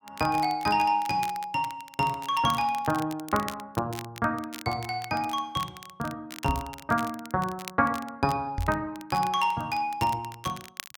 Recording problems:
crackle; vinyl, SNR 16 dB
knock on the microphone; at 6.5 s and at 8.5 s; peak +2 dB vs average level

